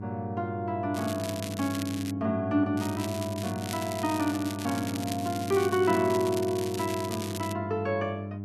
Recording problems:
hum; 50 Hz, harmonics up to 700 Hz, SNR 8 dB
crackling; from 1 to 2 s and from 3 to 7.5 s; loose cable, SNR 11 dB

